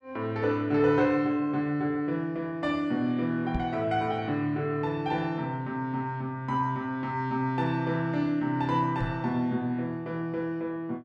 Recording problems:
knock on the microphone; at 3.5 s and at 9 s; peak -1 dB vs average level

